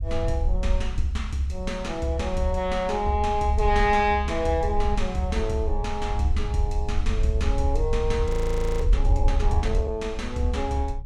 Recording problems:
low-frequency rumble; below 62 Hz, SNR 3 dB
audio freezing; at 8.5 s for 0.5 s

